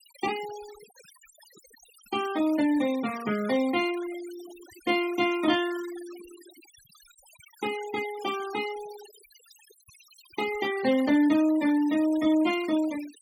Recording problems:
denoising artefacts; signal-to-artefact ratio 17 dB

